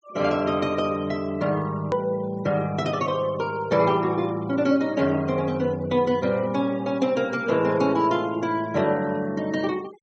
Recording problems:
treble cut off; nothing above 8 kHz
denoising artefacts; signal-to-artefact ratio 24 dB
edit click; at 2 s

